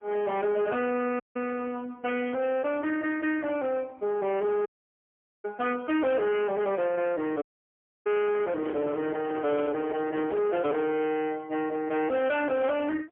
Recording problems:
telephone audio; 190 Hz to 3.2 kHz, AMR-NB, then MP3
distortion; soft clipping, signal-to-distortion ratio 10 dB
dropout; at 1 s, at 4.5 s for 1 s and at 7.5 s for 0.5 s
microphone handling noise; from 8 to 11 s; peak -6 dB vs average level

